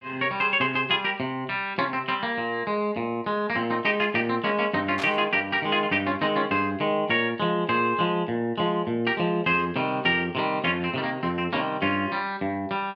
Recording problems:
burst of static; at 5 s; peak -4 dB vs average level

